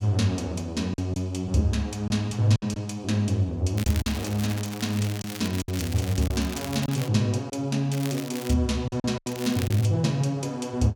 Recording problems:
lost packets; 5% of the sound replaced, filled with silence
crackling; from 4 to 7 s, at 8 s and at 9.5 s; loose cable, SNR 12 dB

